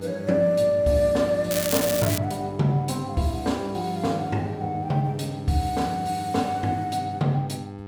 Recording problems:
mains hum; 50 Hz, harmonics up to 1.7 kHz, SNR 13 dB
crackling; at 1.5 s; loose cable, SNR 3 dB

